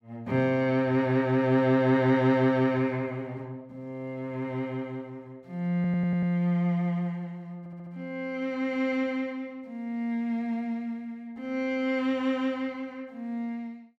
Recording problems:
stutter; at 6 s and at 7.5 s

